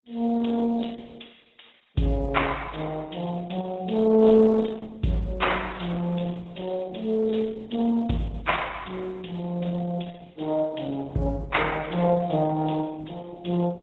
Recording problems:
lossy codec; AAC, then Opus, log-spectral distance 6 dB

